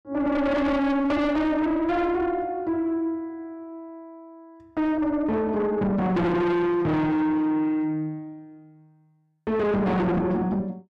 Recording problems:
distorted audio; soft clipping, signal-to-distortion ratio 6 dB

